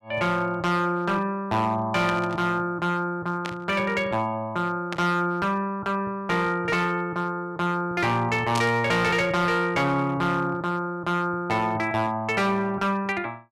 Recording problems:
distorted audio; hard clipping, signal-to-distortion ratio 11 dB
static burst; 4 times, first at 2 s; peak -2 dB vs average level

